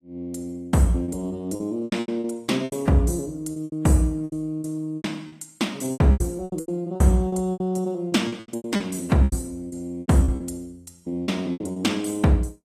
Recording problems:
lossy compression; AAC, log-spectral distance 2 dB
lost packets; 16% of the sound replaced, filled with repeated pitch periods

